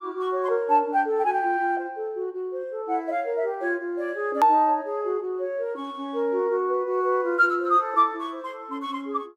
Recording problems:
click at an edit; at 4.5 s

